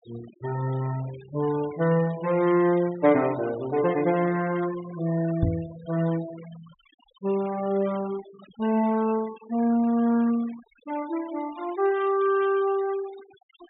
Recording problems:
treble missing; nothing above 4 kHz
noise reduction artefacts; signal-to-artefact ratio 20 dB
microphone bump; at 5.5 s; peak +4 dB vs average level

